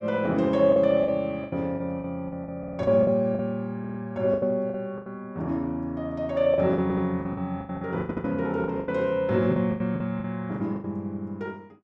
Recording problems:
packet loss; 13% of the sound replaced, filled with the last packet
audio stuttering; 4 times, first at 2.5 s

